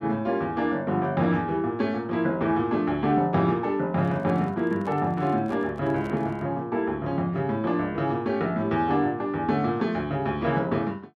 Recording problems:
handling noise; from 4 to 6.5 s; peak -13 dB vs average level

